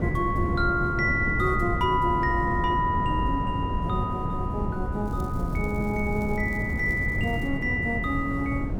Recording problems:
wind noise; below 230 Hz, SNR 3 dB
crackle; from 5 to 7.5 s; loose cable, SNR 27 dB

